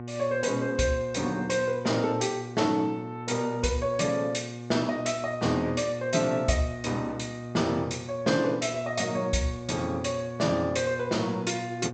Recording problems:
treble missing; nothing above 8 kHz
electrical hum; 60 Hz, harmonics up to 1.4 kHz, SNR 11 dB

